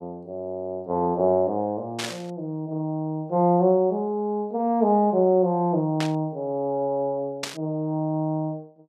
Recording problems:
static burst; at 2 s, at 6 s and at 7.5 s; peak 0 dB vs average level

